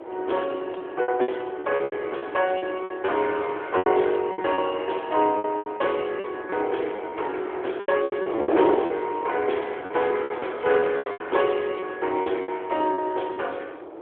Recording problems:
phone line; 280 Hz to 3.4 kHz, AMR-NB
wind noise; below 660 Hz, SNR 8 dB
lost packets; 13% of the sound replaced, filled with repeated pitch periods

